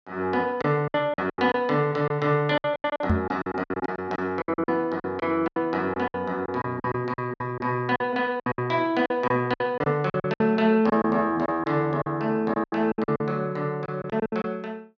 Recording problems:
lost packets; 15% of the sound replaced, filled with silence
microphone thump; at 3 s; peak +6 dB vs average level

